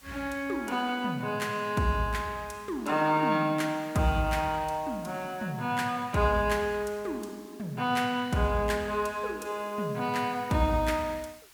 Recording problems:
background hiss; slope +1 dB per octave, SNR 24 dB

